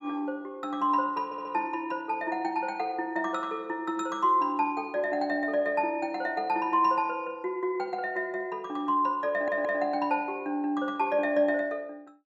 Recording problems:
stutter; at 1.5 s and at 9.5 s

